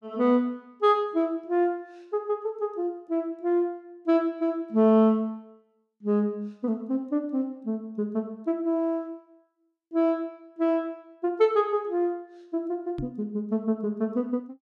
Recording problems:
microphone bump; at 13 s; peak -4 dB vs average level

